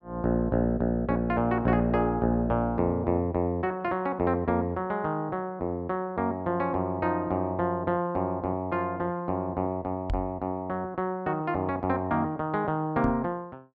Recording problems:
knock on the microphone; at 10 s and at 13 s; peak -1 dB vs average level

